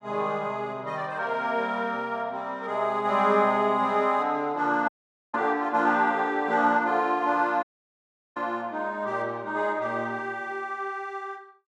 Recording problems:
dropout; at 5 s and at 7.5 s for 0.5 s

